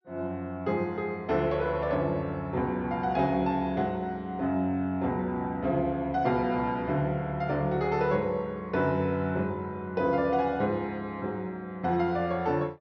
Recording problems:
low-pass filter; nothing above 6.3 kHz

